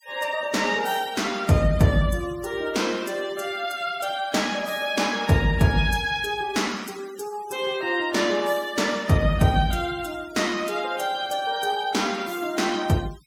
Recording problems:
noise reduction artefacts; signal-to-artefact ratio 20 dB

